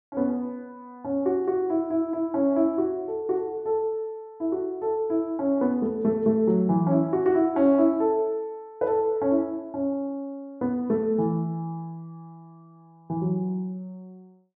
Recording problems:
none

